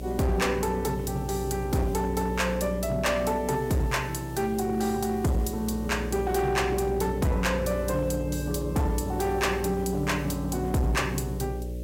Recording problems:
distortion; hard clipping, signal-to-distortion ratio 11 dB
electrical hum; 60 Hz, harmonics up to 600 Hz, SNR 9 dB
hiss; SNR 24 dB

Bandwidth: 16 kHz